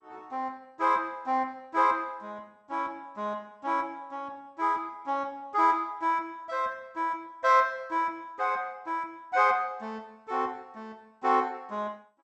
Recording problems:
lossy compression; MP2, log-spectral distance 2 dB

